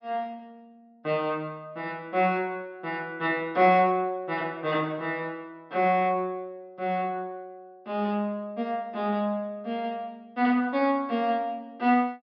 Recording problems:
treble missing; nothing above 5.5 kHz

